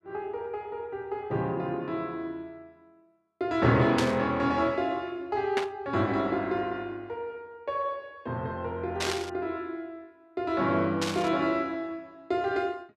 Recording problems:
static burst; 4 times, first at 4 s; peak +3 dB vs average level

